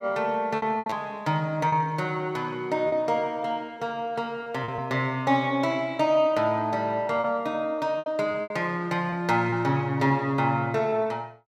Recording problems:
packet loss; 6% of the sound replaced, filled with repeated pitch periods

